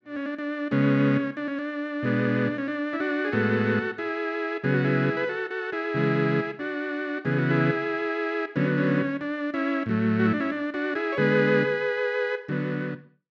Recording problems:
none

